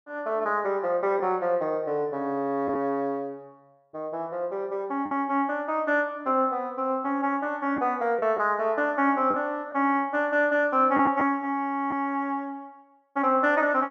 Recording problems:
lost packets; 1.7% of the sound replaced, filled with the last packet

